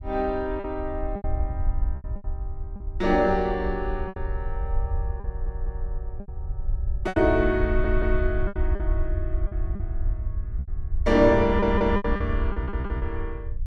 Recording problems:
rumble; below 68 Hz, SNR 5 dB
packet loss; 9% of the sound replaced, filled with repeated pitch periods
audio stuttering; 4 times, first at 5.5 s

